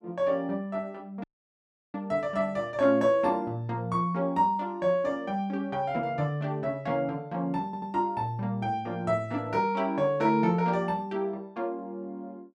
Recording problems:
audio cutting out; at 1 s for 0.5 s
audio stuttering; at 7.5 s

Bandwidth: 12 kHz